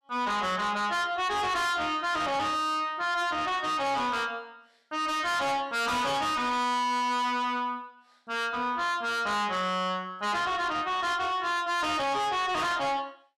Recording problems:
distortion; soft clipping, signal-to-distortion ratio 7 dB

